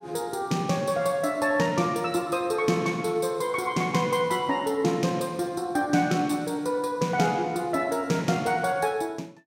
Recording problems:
none

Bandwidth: 16 kHz